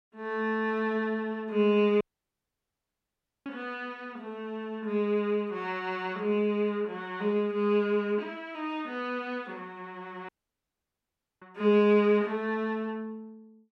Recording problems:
audio cutting out; at 2 s for 1.5 s and at 10 s for 1 s

